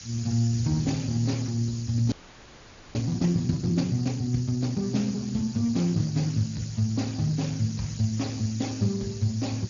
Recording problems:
treble missing; nothing above 6.9 kHz
lossy codec; Speex, log-spectral distance 12 dB
hiss; slope +5 dB per octave, SNR 15 dB
wind on the microphone; below 170 Hz, SNR 20 dB
audio freezing; at 2 s for 1 s

